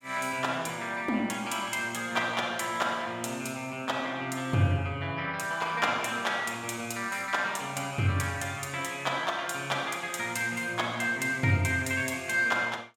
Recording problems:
none

